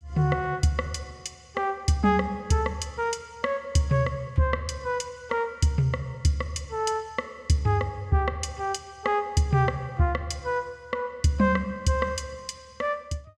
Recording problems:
none

